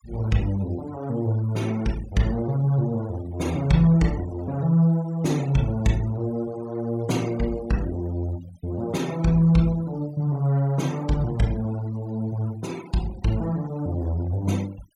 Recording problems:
denoising artefacts; signal-to-artefact ratio 21 dB

